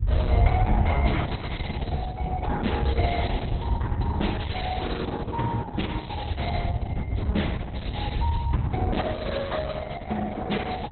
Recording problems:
lossy compression; Opus, log-spectral distance 3 dB, nothing above 4.1 kHz
low-frequency rumble; below 98 Hz, SNR -2 dB

